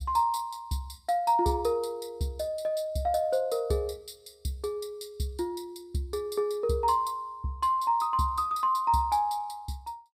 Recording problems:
none

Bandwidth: 15.5 kHz